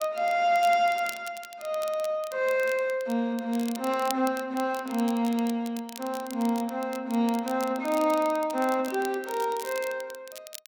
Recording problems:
crackling; vinyl, SNR 16 dB

